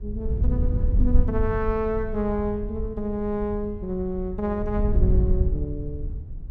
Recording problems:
wind noise; below 80 Hz, SNR -1 dB

